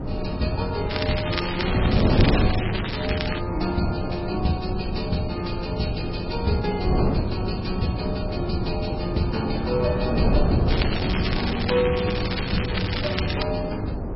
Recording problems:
lossy compression; MP3, log-spectral distance 7 dB, nothing above 4.9 kHz
wind on the microphone; below 310 Hz, SNR 0 dB
crackle; from 1 to 3.5 s and from 11 to 13 s; loose cable, SNR 3 dB

